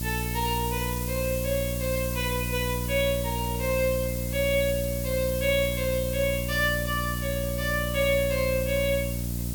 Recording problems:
hum; 60 Hz, harmonics up to 660 Hz, SNR 4 dB
hiss; slope +5 dB per octave, SNR 7 dB

